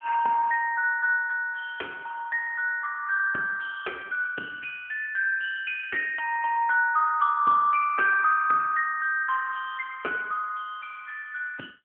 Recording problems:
telephone audio; 300 Hz to 2.9 kHz, AMR-NB

